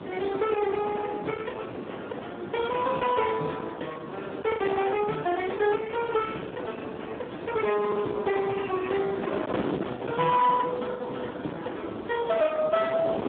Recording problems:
phone line; 190 Hz to 2.6 kHz, Speex
distortion; hard clipping, uneven, signal-to-distortion ratio 11 dB
wind on the microphone; below 720 Hz, SNR 8 dB
packet loss; 3% of the sound replaced, filled with the last packet

